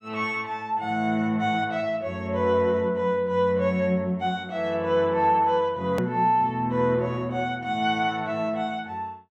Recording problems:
edit click; at 6 s

